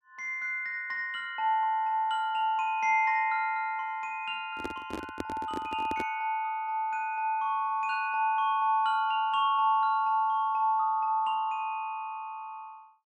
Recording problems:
microphone handling noise; from 4.5 to 6 s; peak -2 dB vs average level

